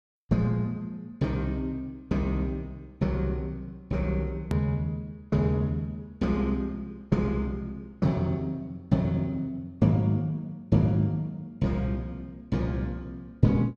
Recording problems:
edit click; at 4.5 s

